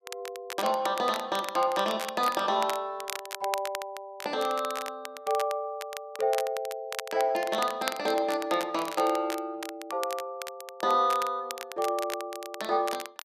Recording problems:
crackling; vinyl, SNR 11 dB

